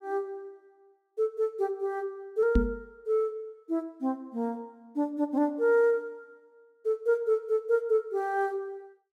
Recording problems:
microphone bump; at 2.5 s; peak +7 dB vs average level

